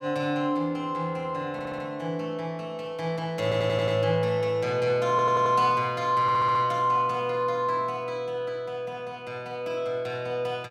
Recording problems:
audio stuttering; 4 times, first at 1.5 s

